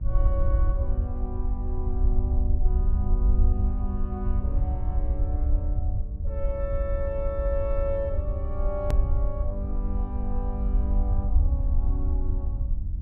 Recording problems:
hum; 50 Hz, harmonics up to 700 Hz, SNR 12 dB
rumble; below 68 Hz, SNR -8 dB
edit click; at 9 s

